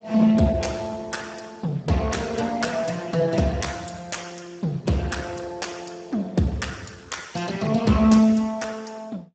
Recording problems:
lossy codec; Speex, log-spectral distance 6 dB, nothing above 7.8 kHz

